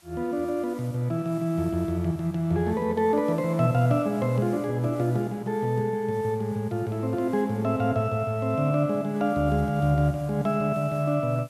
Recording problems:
background hiss; slope -1 dB per octave, SNR 27 dB

